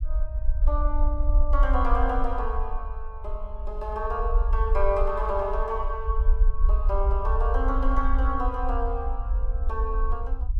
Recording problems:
rumble; below 52 Hz, SNR -2 dB

